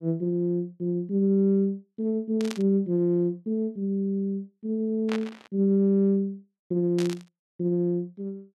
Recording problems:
static burst; at 2.5 s, at 5 s and at 7 s; peak -5 dB vs average level

